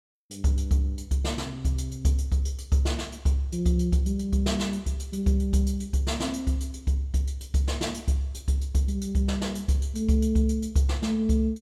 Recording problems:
none

